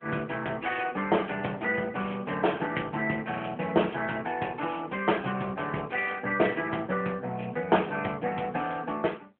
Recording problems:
phone line; 220 Hz to 3.3 kHz, AMR-NB

